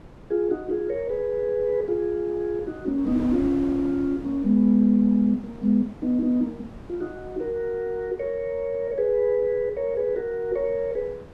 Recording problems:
wind on the microphone; below 490 Hz, SNR 19 dB

